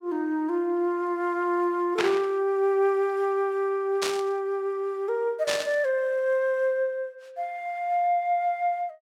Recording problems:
static burst; at 2 s, at 4 s and at 5.5 s; peak +2 dB vs average level

